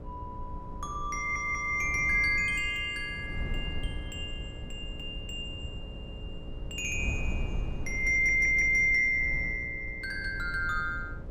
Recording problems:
hum; 60 Hz, harmonics up to 600 Hz, SNR 22 dB
wind on the microphone; below 110 Hz, SNR 13 dB
stutter; at 1 s, at 6 s and at 8 s

